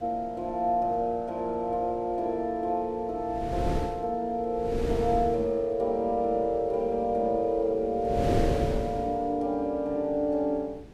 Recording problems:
wind noise; below 350 Hz, SNR 7 dB

